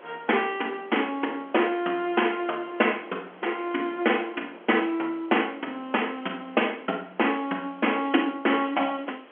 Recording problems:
telephone audio; 240 Hz to 3.3 kHz, G.711
hiss; SNR 30 dB
wind on the microphone; below 1.2 kHz, SNR 22 dB

